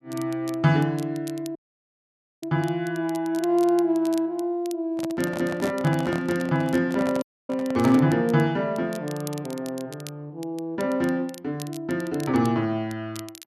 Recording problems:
crackle; vinyl, SNR 20 dB
audio cutting out; at 1.5 s for 1 s and at 7 s
handling noise; from 5 to 8 s; peak -4 dB vs average level

